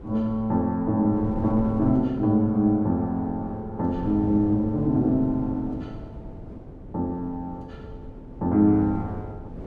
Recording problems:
wind on the microphone; below 310 Hz, SNR 14 dB

